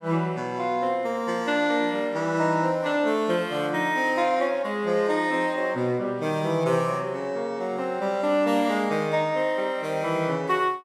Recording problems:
none

